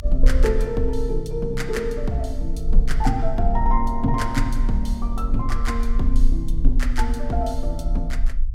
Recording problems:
low-frequency rumble; below 38 Hz, strongest tone 22 Hz, SNR 0 dB

